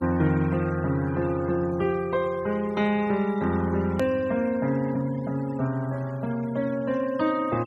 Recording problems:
noise reduction artefacts; signal-to-artefact ratio 19 dB
edit click; at 4 s

